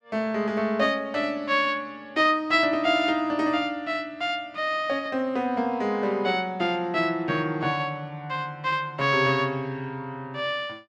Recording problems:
none

